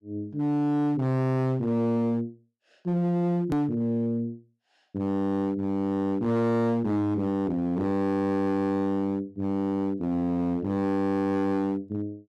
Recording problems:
distortion; hard clipping, signal-to-distortion ratio 6 dB
edit click; at 3.5 s

